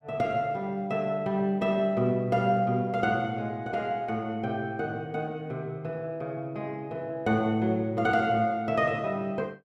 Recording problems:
none

